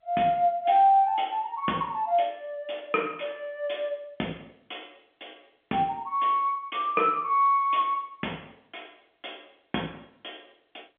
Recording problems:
phone line; 220 Hz to 3.3 kHz, G.711

